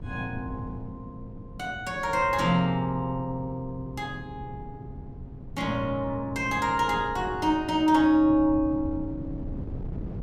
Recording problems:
wind noise; below 190 Hz, SNR 14 dB

